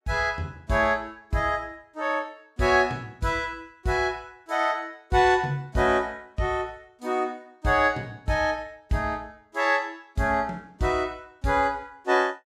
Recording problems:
none

